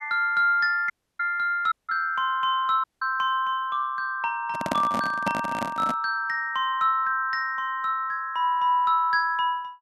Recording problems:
dropout; at 1 s, at 1.5 s and at 3 s
handling noise; from 4.5 to 6 s; peak +2 dB vs average level

